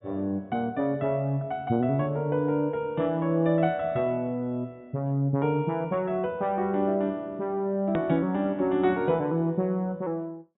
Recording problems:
treble missing; nothing above 4 kHz
click at an edit; at 8 s

